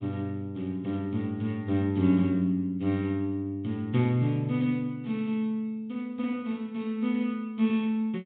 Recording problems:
treble cut off; nothing above 4 kHz

